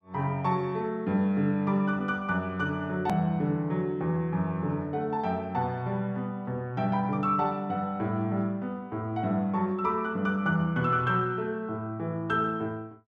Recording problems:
click at an edit; at 3 s

